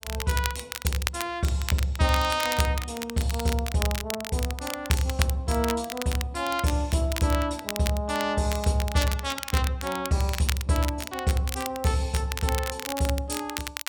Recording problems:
crackle; vinyl, SNR 8 dB

